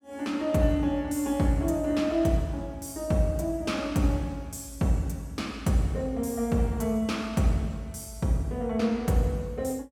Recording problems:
none

